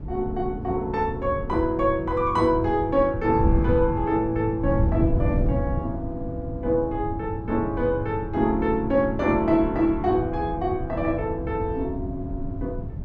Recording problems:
wind on the microphone; below 150 Hz, SNR 6 dB

